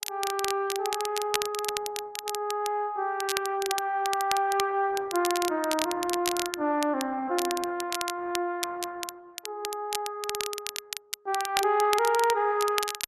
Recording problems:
lossy compression; Opus, log-spectral distance 2 dB
crackle; vinyl, SNR 6 dB

